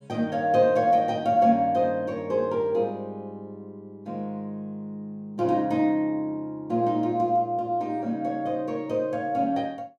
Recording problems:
none

